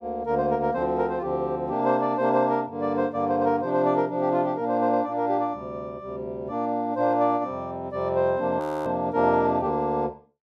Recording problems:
audio freezing; at 8.5 s

